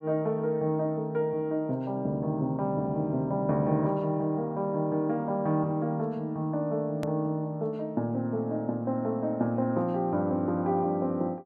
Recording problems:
click at an edit; at 7 s

